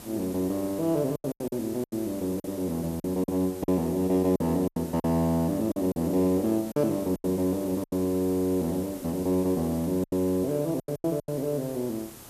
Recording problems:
hiss; SNR 17 dB
lost packets; 10% of the sound replaced, filled with silence

